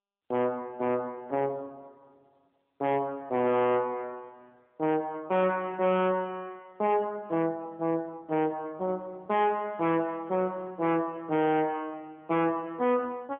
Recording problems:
telephone audio; 170 Hz to 3.5 kHz, AMR-NB
distorted audio; soft clipping, signal-to-distortion ratio 8 dB

